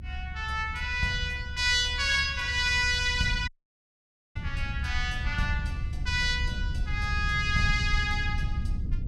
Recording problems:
low-frequency rumble; below 92 Hz, SNR 7 dB
audio cutting out; at 3.5 s for 1 s

